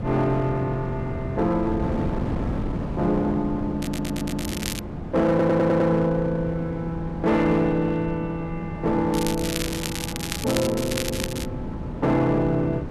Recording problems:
distortion; hard clipping, uneven, signal-to-distortion ratio 11 dB
wind on the microphone; below 310 Hz, SNR 8 dB
stutter; at 4 s and at 5.5 s
crackle; at 4 s, at 9 s and from 10 to 11 s; loose cable, SNR 7 dB

